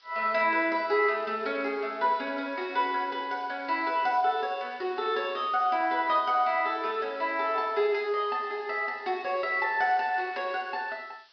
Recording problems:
low-pass filter; nothing above 5.5 kHz
background hiss; SNR 28 dB

